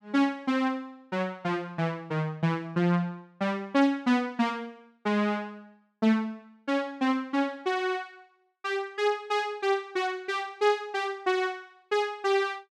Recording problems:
none

